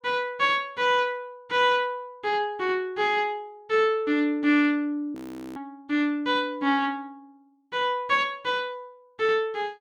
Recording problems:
frozen audio; at 5 s

